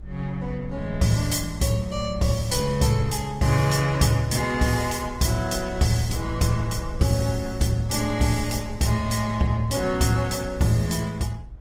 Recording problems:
lossy compression; Opus, log-spectral distance 4 dB
low-frequency rumble; below 70 Hz, SNR 15 dB

